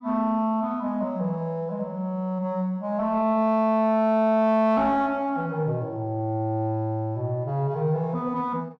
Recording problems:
distorted audio; soft clipping, signal-to-distortion ratio 11 dB

